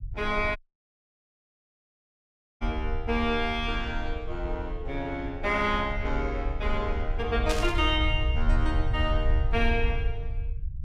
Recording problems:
low-frequency rumble; below 68 Hz, SNR 3 dB
audio cutting out; at 0.5 s for 2 s
burst of static; at 7.5 s; peak +1 dB vs average level

